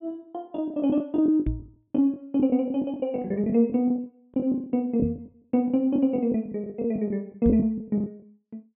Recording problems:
treble missing; nothing above 3.6 kHz
packet loss; 16% of the sound replaced, filled with the last packet
knock on the microphone; at 1.5 s, at 5 s and at 7.5 s; peak +1 dB vs average level

